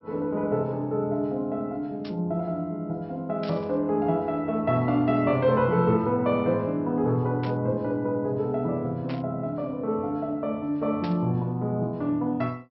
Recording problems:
treble cut off; nothing above 5.5 kHz
static burst; 5 times, first at 2 s; peak -10 dB vs average level

